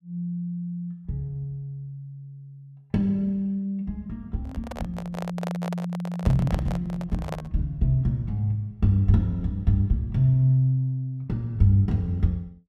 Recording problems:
microphone handling noise; from 4.5 to 7.5 s; peak -4 dB vs average level

